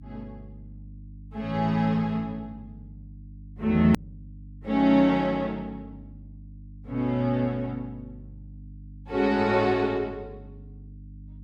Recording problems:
electrical hum; 50 Hz, harmonics up to 300 Hz, SNR 20 dB
hard cut with a click; at 4 s

